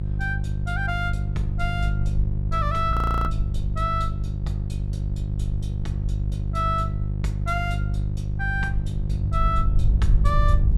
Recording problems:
hum; 50 Hz, harmonics up to 400 Hz, SNR -1 dB
wind noise; below 68 Hz, SNR 2 dB
audio freezing; at 3 s

